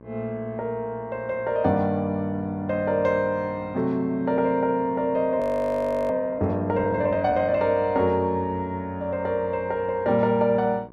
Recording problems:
hum; 60 Hz, harmonics up to 1.6 kHz, SNR 24 dB
audio freezing; at 5.5 s for 0.5 s

